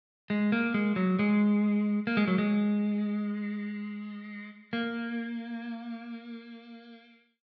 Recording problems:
treble cut off; nothing above 8 kHz

